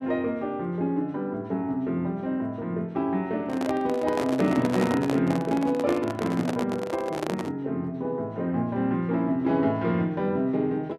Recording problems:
microphone handling noise; from 3.5 to 7.5 s; peak +1 dB vs average level

